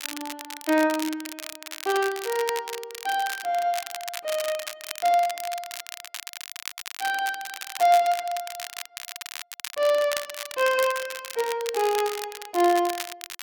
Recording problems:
crackle; vinyl, SNR 10 dB

